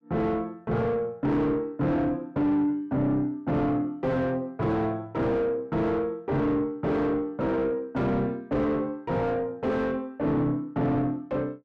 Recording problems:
distorted audio; soft clipping, signal-to-distortion ratio 6 dB

